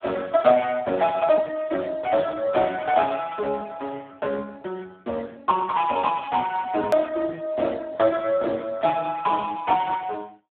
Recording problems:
telephone audio; 260 Hz to 2 kHz, Speex
edit click; at 7 s

